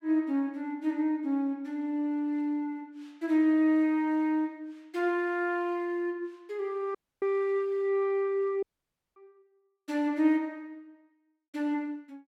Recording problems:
dropout; at 7 s and at 8.5 s for 0.5 s

